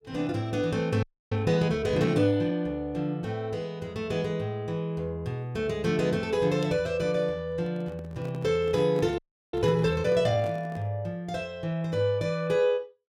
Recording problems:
audio freezing; at 1 s and at 9 s
microphone handling noise; from 7.5 to 11 s; peak -8 dB vs average level

